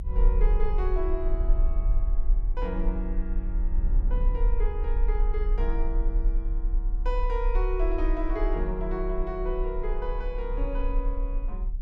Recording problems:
low-frequency rumble; below 36 Hz, strongest tone 34 Hz, SNR -5 dB
wind noise; below 220 Hz, SNR 14 dB

